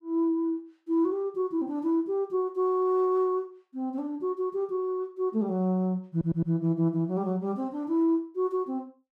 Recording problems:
stutter; at 6 s

